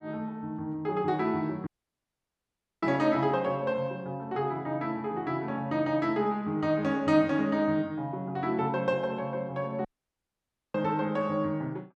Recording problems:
dropout; at 1.5 s for 1 s and at 10 s for 1 s

